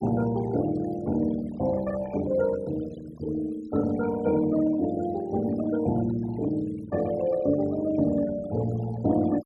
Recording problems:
denoising artefacts; signal-to-artefact ratio 17 dB

